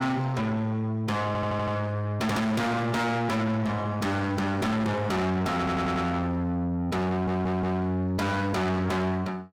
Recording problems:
distorted audio; soft clipping, signal-to-distortion ratio 7 dB
audio stuttering; at 1.5 s, at 5.5 s and at 7 s

